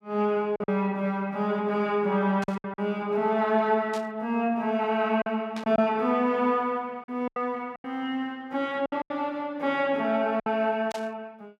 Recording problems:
packet loss; 6% of the sound replaced, filled with silence
static burst; 4 times, first at 2.5 s; peak -8 dB vs average level

